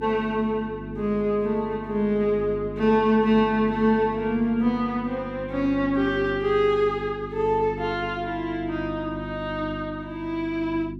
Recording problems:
hum; 50 Hz, harmonics up to 350 Hz, SNR 12 dB

